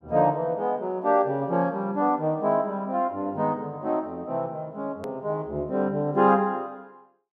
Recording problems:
edit click; at 5 s

